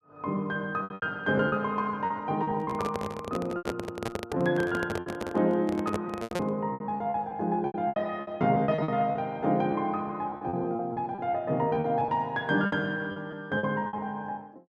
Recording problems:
lost packets; 13% of the sound replaced, filled with repeated pitch periods
handling noise; from 2.5 to 6.5 s; peak +2 dB vs average level

